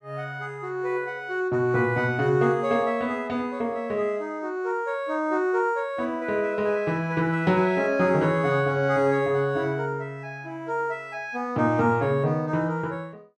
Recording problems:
none

